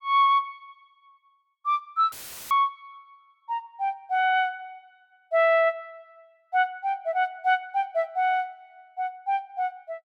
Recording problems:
dropout; at 2 s; filled with static

